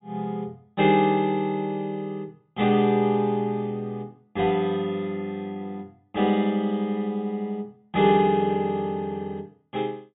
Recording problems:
treble missing; nothing above 4 kHz

